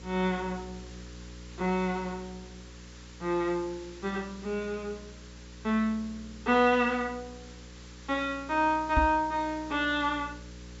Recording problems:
low-pass filter; nothing above 8 kHz
hum; 60 Hz, harmonics up to 540 Hz, SNR 19 dB
hiss; SNR 21 dB
knock on the microphone; at 9 s; peak +5 dB vs average level

